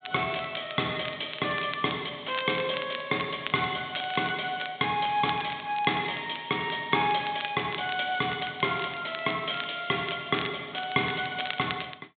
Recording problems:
treble cut off; nothing above 4 kHz
crackling; vinyl, SNR 12 dB

